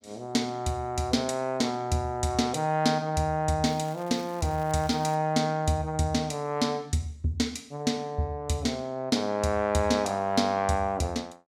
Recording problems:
crackling; from 3.5 to 5 s; loose cable, SNR 23 dB

